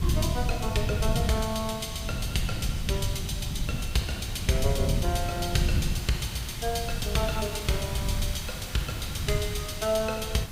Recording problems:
hiss; slope -1 dB per octave, SNR 12 dB
wind noise; below 130 Hz, SNR 2 dB

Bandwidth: 15.5 kHz